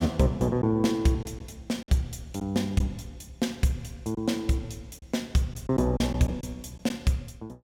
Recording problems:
lost packets; 4% of the sound replaced, filled with silence

